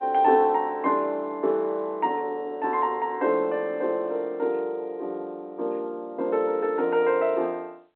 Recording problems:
telephone audio; 240 Hz to 3.2 kHz, G.711

